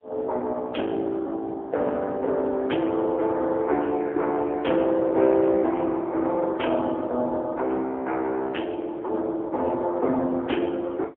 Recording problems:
phone line; 260 Hz to 3.3 kHz, AMR-NB, then MP3

